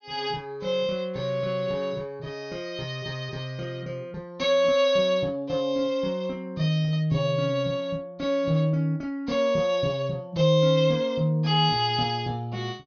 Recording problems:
low-pass filter; nothing above 6.5 kHz

